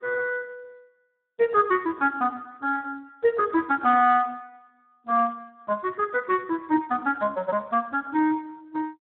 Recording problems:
telephone audio; 240 Hz to 3.7 kHz, Speex

